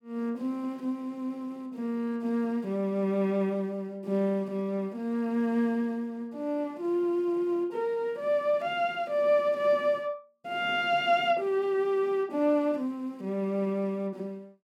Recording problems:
none

